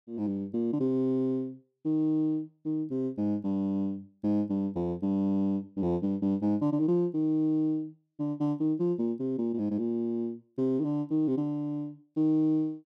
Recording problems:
none

